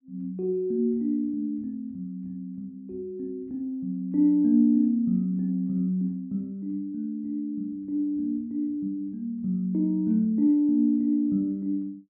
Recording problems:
none

